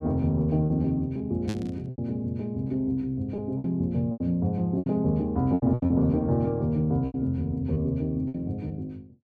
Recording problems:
packet loss; 9% of the sound replaced, filled with repeated pitch periods
burst of static; at 1.5 s; peak -9 dB vs average level

